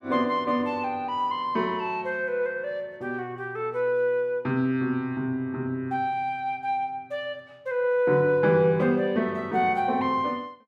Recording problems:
none

